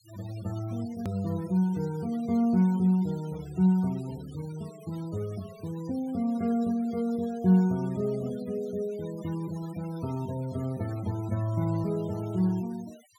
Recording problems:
denoising artefacts; signal-to-artefact ratio 22 dB
edit click; at 1 s

